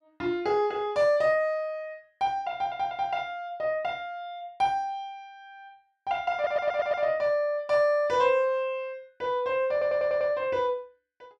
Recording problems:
stutter; at 2.5 s, at 6.5 s and at 9.5 s

